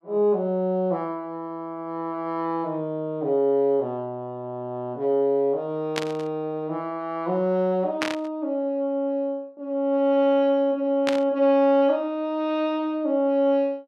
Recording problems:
burst of static; at 6 s, at 8 s and at 11 s; peak +2 dB vs average level

